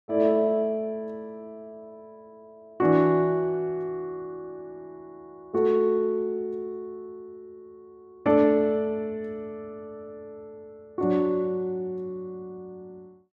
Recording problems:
none

